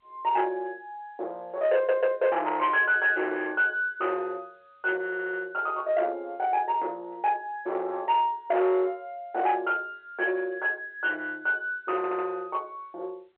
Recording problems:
telephone audio; 320 Hz to 3.4 kHz, G.711
distorted audio; soft clipping, signal-to-distortion ratio 11 dB
audio stuttering; at 2 s, at 5 s and at 12 s

